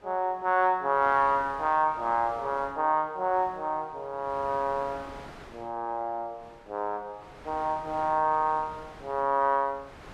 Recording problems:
wind on the microphone; below 1.7 kHz, SNR 21 dB

